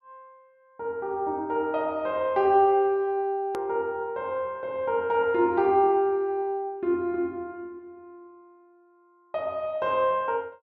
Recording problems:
edit click; at 3.5 s

